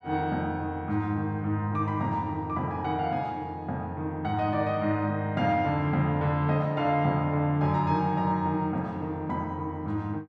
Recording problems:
none

